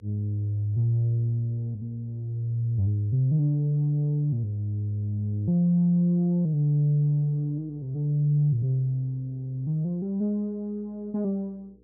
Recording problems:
hum; 60 Hz, harmonics up to 480 Hz, SNR 33 dB

